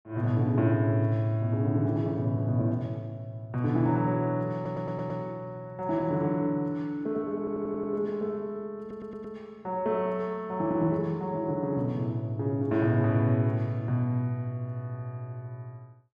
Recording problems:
audio stuttering; at 4.5 s, at 7.5 s and at 9 s

